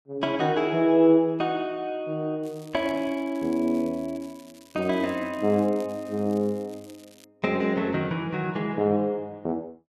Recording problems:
crackling; from 2.5 to 7 s; loose cable, SNR 27 dB

